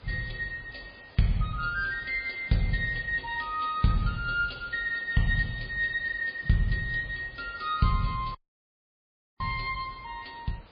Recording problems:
lossy codec; MP3, log-spectral distance 7 dB, nothing above 4.5 kHz
hiss; SNR 24 dB
audio cutting out; at 8.5 s for 1 s

